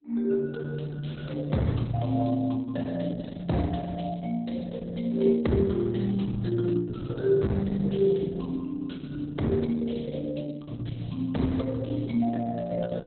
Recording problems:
codec artefacts; Opus, log-spectral distance 4 dB, nothing above 4.1 kHz

